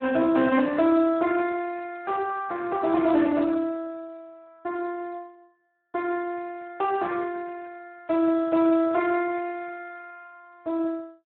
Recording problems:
telephone audio; 110 Hz to 3.3 kHz, Speex

